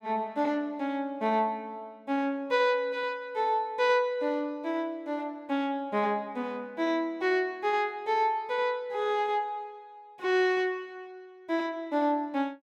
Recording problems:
none

